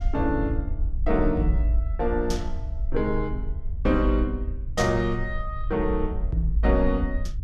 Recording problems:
rumble; below 62 Hz, SNR 5 dB

